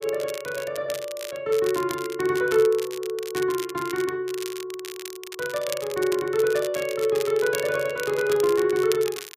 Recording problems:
crackle; vinyl, SNR 13 dB

